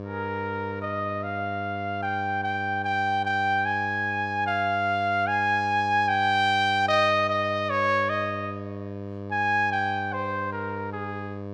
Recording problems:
hum; 50 Hz, harmonics up to 1.2 kHz, SNR 11 dB

